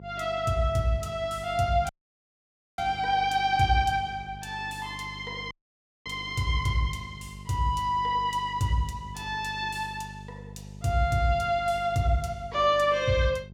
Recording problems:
hum; 50 Hz, harmonics up to 600 Hz, SNR 17 dB
audio cutting out; at 2 s for 1 s and at 5.5 s for 0.5 s

